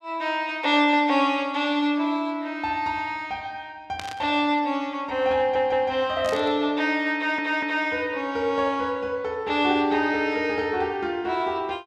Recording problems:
burst of static; at 4 s and at 6 s; peak -7 dB vs average level
stutter; at 5.5 s and at 7 s

